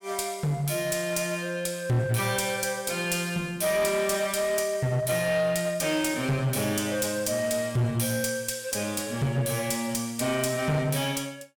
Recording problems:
distortion; hard clipping, uneven, signal-to-distortion ratio 11 dB

